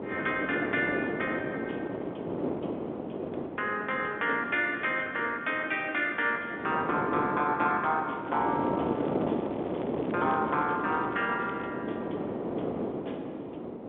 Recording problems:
telephone audio; 240 Hz to 3.6 kHz, G.711
wind on the microphone; below 580 Hz, SNR 4 dB
crackle; from 8.5 to 12 s; loose cable, SNR 24 dB

